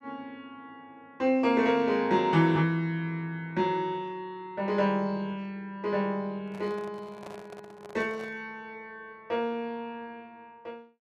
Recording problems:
microphone handling noise; from 6.5 to 8.5 s; peak -11 dB vs average level

